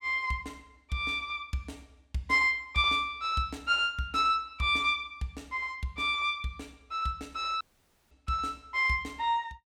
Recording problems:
dropout; at 7.5 s

